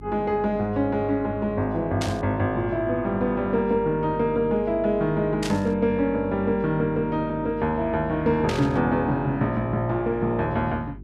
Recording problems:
hum; 50 Hz, harmonics up to 400 Hz, SNR 17 dB
burst of static; at 2 s, at 5.5 s and at 8.5 s; peak -3 dB vs average level

